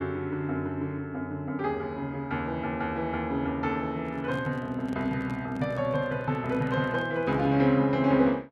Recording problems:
handling noise; from 4 to 7.5 s; peak -10 dB vs average level

